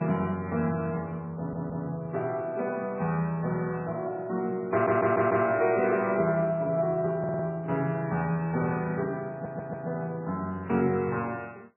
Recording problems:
lossy compression; MP3, log-spectral distance 2 dB, nothing above 2.4 kHz
audio stuttering; 4 times, first at 1.5 s

